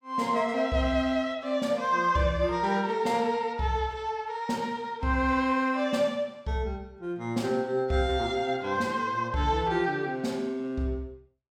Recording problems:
none

